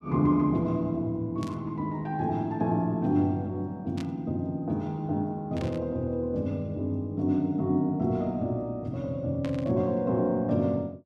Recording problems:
burst of static; 4 times, first at 1.5 s; peak -10 dB vs average level

